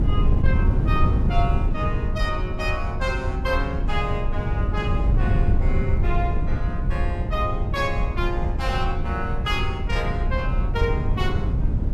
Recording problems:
wind on the microphone; below 110 Hz, SNR -4 dB

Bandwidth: 15 kHz